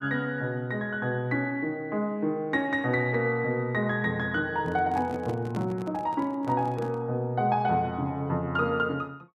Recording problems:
microphone handling noise; from 4.5 to 7 s; peak -5 dB vs average level

